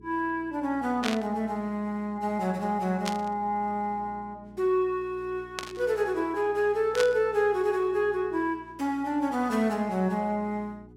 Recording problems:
electrical hum; 60 Hz, harmonics up to 420 Hz, SNR 23 dB
burst of static; 4 times, first at 1 s; peak +1 dB vs average level

